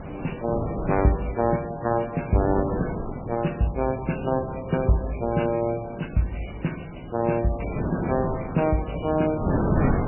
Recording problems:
lossy codec; MP3, log-spectral distance 9 dB, nothing above 2.9 kHz
wind on the microphone; below 510 Hz, SNR 6 dB

